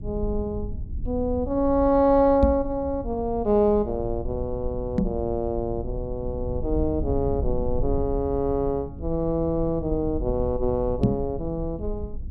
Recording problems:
low-frequency rumble; below 82 Hz, SNR 9 dB
knock on the microphone; at 2.5 s, at 5 s and at 11 s; peak +8 dB vs average level

